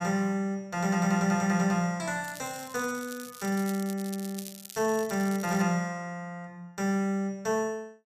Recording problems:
crackle; from 2 to 5.5 s; loose cable, SNR 15 dB

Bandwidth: 14.5 kHz